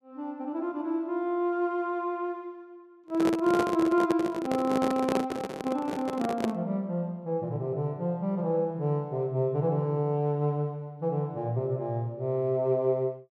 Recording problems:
handling noise; from 3 to 6.5 s; peak +4 dB vs average level

